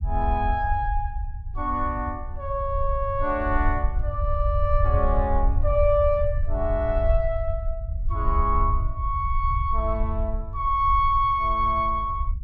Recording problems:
rumble; below 72 Hz, SNR 3 dB

